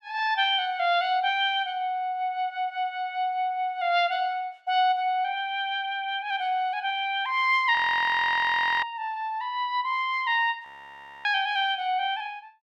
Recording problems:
frozen audio; at 8 s for 1 s and at 11 s for 0.5 s

